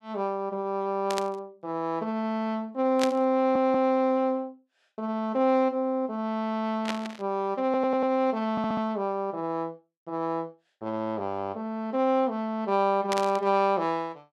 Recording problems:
burst of static; 4 times, first at 1 s; peak +1 dB vs average level
stutter; at 3.5 s, at 7.5 s and at 8.5 s

